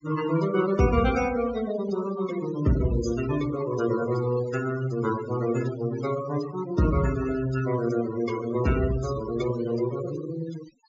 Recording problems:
low-pass filter; nothing above 7.3 kHz
noise reduction artefacts; signal-to-artefact ratio 12 dB

